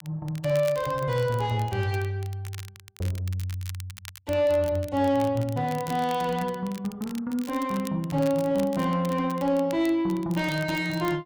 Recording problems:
distortion; soft clipping, signal-to-distortion ratio 11 dB
crackling; vinyl, SNR 19 dB

